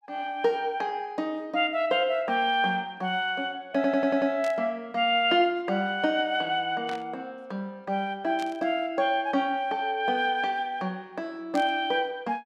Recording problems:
audio stuttering; at 4 s
burst of static; 4 times, first at 4.5 s; peak -9 dB vs average level

